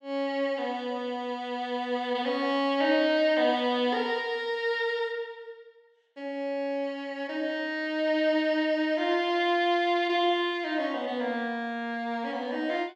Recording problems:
none

